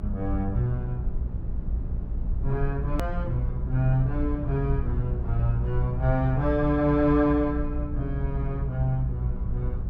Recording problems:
hum; 60 Hz, harmonics up to 420 Hz, SNR 9 dB
low-frequency rumble; below 68 Hz, SNR 5 dB
hard cut with a click; at 3 s

